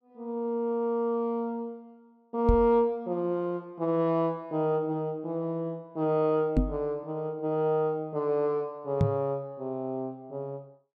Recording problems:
microphone bump; at 2.5 s, at 6.5 s and at 9 s; peak +8 dB vs average level

